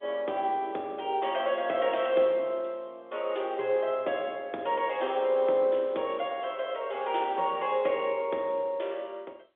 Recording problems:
phone line; 280 Hz to 3.7 kHz, G.711

